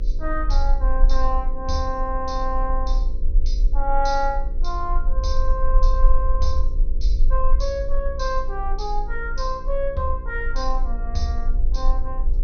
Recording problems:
low-pass filter; nothing above 6.3 kHz
hum; 60 Hz, harmonics up to 540 Hz, SNR 15 dB
rumble; below 36 Hz, strongest tone 22 Hz, SNR -2 dB

